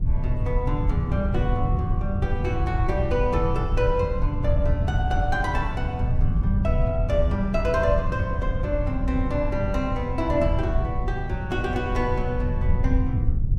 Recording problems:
low-frequency rumble; below 100 Hz, SNR -1 dB
wind on the microphone; below 250 Hz, SNR 15 dB

